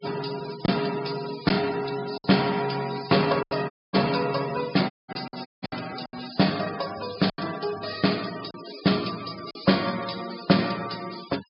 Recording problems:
low-pass filter; nothing above 5.5 kHz
denoising artefacts; signal-to-artefact ratio 13 dB
packet loss; 5% of the sound replaced, filled with silence
dropout; at 3.5 s, at 5 s and at 5.5 s

